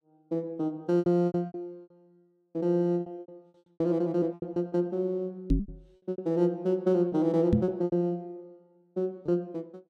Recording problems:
packet loss; 12% of the sound replaced, filled with repeated pitch periods
knock on the microphone; at 5.5 s and at 7.5 s; peak +8 dB vs average level

